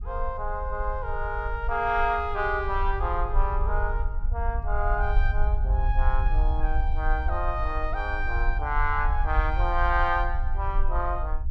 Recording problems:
low-frequency rumble; below 56 Hz, SNR 1 dB

